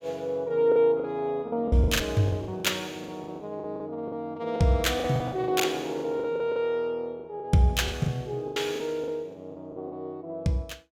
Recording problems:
packet loss; 14% of the sound replaced, filled with the last packet

